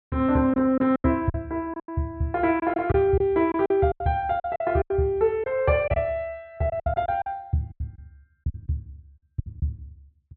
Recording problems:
treble cut off; nothing above 4.3 kHz
lost packets; 12% of the sound replaced, filled with silence

